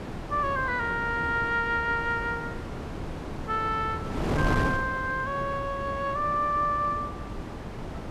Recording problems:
wind noise; below 620 Hz, SNR 6 dB

